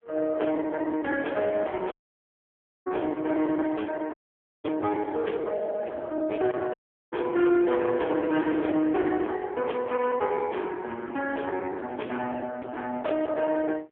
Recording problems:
phone line; 260 Hz to 3.4 kHz, AMR-NB
distorted audio; hard clipping, signal-to-distortion ratio 10 dB
lost packets; 14% of the sound replaced, filled with the last packet
dropout; at 2 s for 1 s, at 4 s for 0.5 s and at 6.5 s

